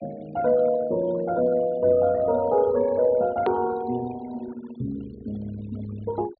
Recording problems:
treble cut off; nothing above 4.4 kHz
denoising artefacts; signal-to-artefact ratio 19 dB
click at an edit; at 3.5 s

